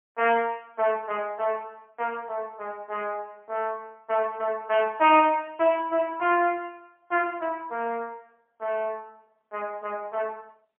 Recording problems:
telephone audio; 320 Hz to 3.2 kHz, AMR-NB, then MP3

